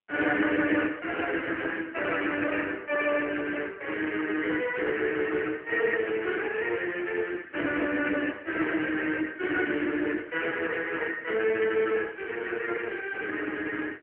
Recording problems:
telephone audio; 260 Hz to 3.1 kHz, AMR-NB

